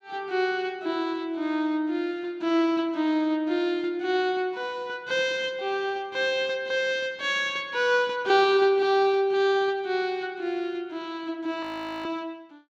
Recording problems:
audio freezing; at 12 s

